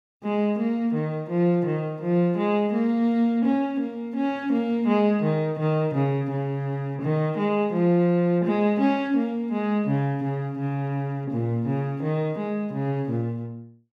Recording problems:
none

